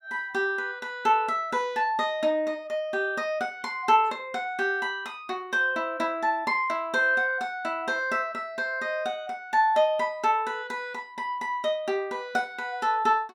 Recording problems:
none

